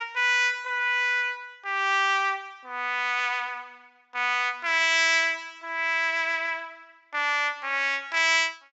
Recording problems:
treble missing; nothing above 7.7 kHz

